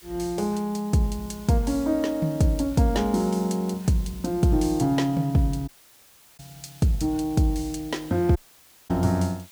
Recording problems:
background hiss; slope +2 dB per octave, SNR 22 dB
dropout; at 5.5 s for 0.5 s and at 8.5 s for 0.5 s

